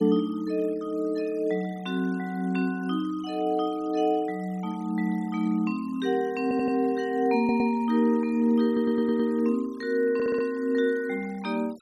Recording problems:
noise reduction artefacts; signal-to-artefact ratio 25 dB
stutter; 4 times, first at 6.5 s

